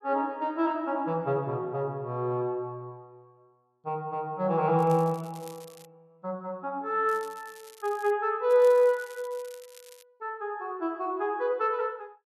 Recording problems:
crackling; from 5 to 6 s, from 7 to 8 s and from 8.5 to 10 s; loose cable, SNR 24 dB

